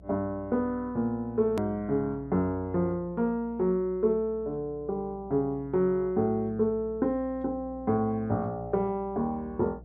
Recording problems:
hum; 60 Hz, harmonics up to 660 Hz, SNR 21 dB
click at an edit; at 1.5 s

